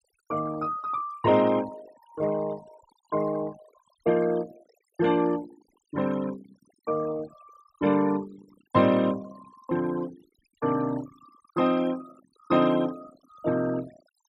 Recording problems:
noise reduction artefacts; signal-to-artefact ratio 18 dB

